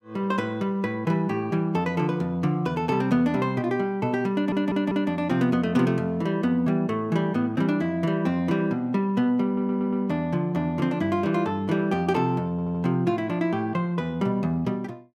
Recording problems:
stutter; at 4.5 s, at 9.5 s and at 13 s

